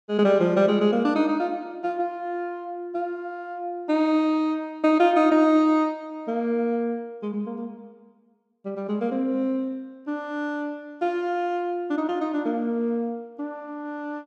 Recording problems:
none

